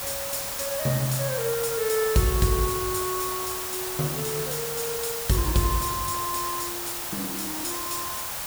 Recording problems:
background hiss; SNR 2 dB

